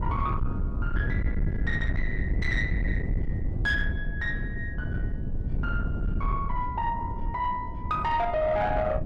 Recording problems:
distorted audio; soft clipping, signal-to-distortion ratio 10 dB
rumble; below 120 Hz, SNR 1 dB

